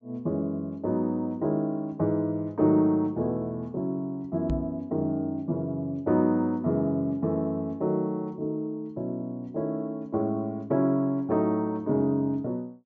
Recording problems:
treble missing; nothing above 8 kHz
microphone thump; at 4.5 s; peak 0 dB vs average level

